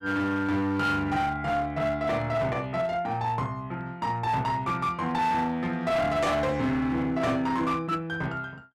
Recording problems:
distorted audio; hard clipping, uneven, signal-to-distortion ratio 11 dB

